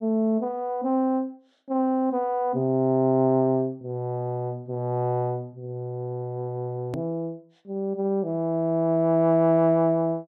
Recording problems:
click at an edit; at 7 s

